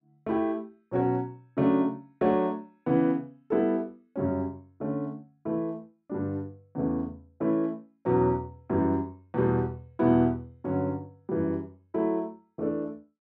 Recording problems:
none

